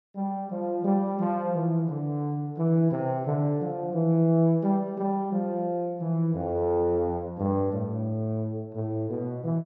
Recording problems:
none

